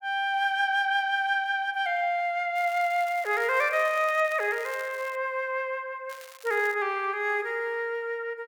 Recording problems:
crackle; from 2.5 to 4 s, at 4 s and at 6 s; loose cable, SNR 21 dB

